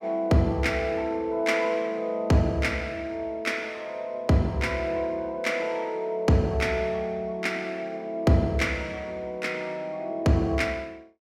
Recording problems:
none

